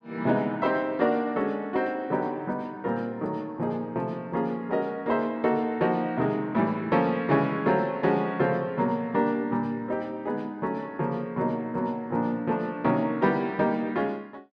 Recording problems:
none

